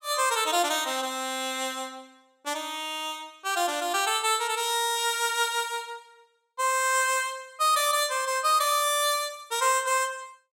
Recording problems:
none

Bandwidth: 16.5 kHz